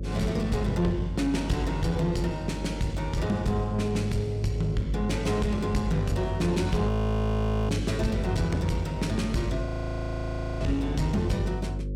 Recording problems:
distorted audio; soft clipping, signal-to-distortion ratio 11 dB
hum; 50 Hz, harmonics up to 550 Hz, SNR 7 dB
frozen audio; at 7 s for 1 s and at 9.5 s for 1 s

